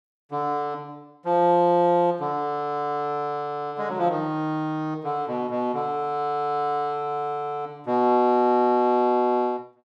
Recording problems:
none

